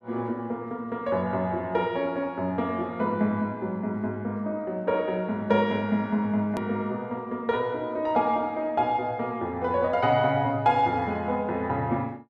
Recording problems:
click at an edit; at 6.5 s

